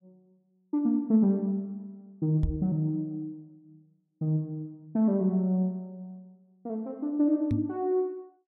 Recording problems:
knock on the microphone; at 2.5 s and at 7.5 s; peak +4 dB vs average level

